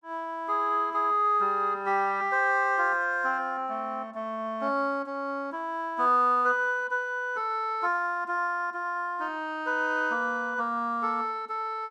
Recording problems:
none

